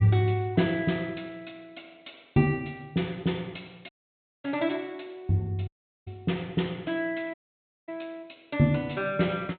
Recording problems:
treble missing; nothing above 4 kHz
audio cutting out; at 4 s for 0.5 s, at 5.5 s and at 7.5 s for 0.5 s

